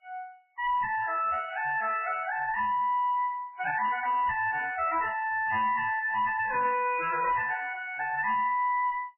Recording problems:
lossy codec; AAC, then MP3, log-spectral distance 3 dB, nothing above 2.4 kHz
distortion; soft clipping, signal-to-distortion ratio 10 dB

